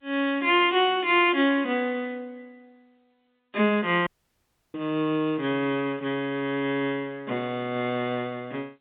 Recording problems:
phone line; 170 Hz to 3.7 kHz, G.711
dropout; at 4 s for 0.5 s

